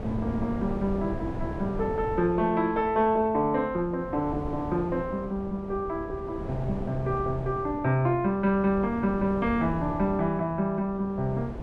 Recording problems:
wind on the microphone; below 390 Hz, SNR 10 dB

